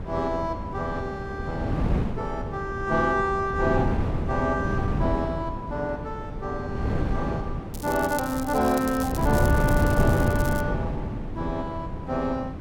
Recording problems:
wind on the microphone; below 260 Hz, SNR 1 dB
crackle; from 7.5 to 11 s; loose cable, SNR 11 dB

